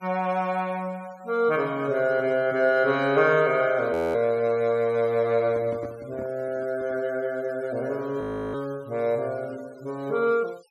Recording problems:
denoising artefacts; signal-to-artefact ratio 26 dB
frozen audio; at 4 s and at 8 s
handling noise; from 5.5 to 7 s; peak -10 dB vs average level

